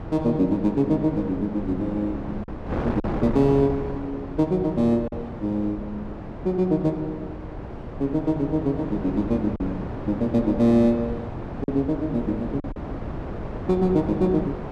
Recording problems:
wind on the microphone; below 520 Hz, SNR 10 dB
lost packets; 2% of the sound replaced, filled with silence

